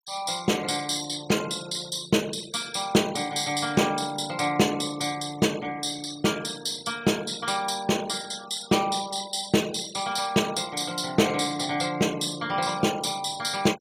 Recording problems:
noise reduction artefacts; signal-to-artefact ratio 17 dB

